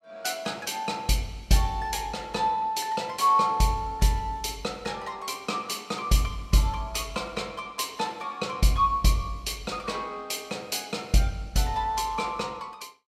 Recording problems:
none

